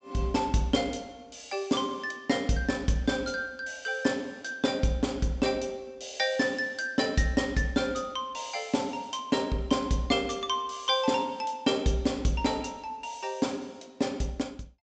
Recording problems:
treble cut off; nothing above 8 kHz

